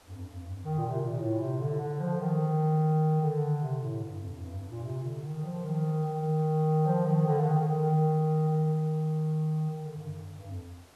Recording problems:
hiss; slope -4 dB per octave, SNR 29 dB

